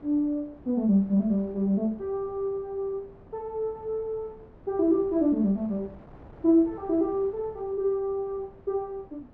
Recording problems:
wind noise; below 540 Hz, SNR 23 dB

